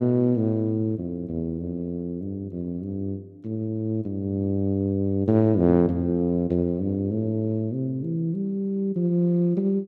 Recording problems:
none

